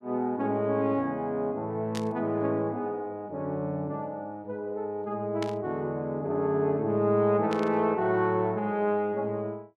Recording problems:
burst of static; at 2 s, at 5.5 s and at 7.5 s; peak -5 dB vs average level

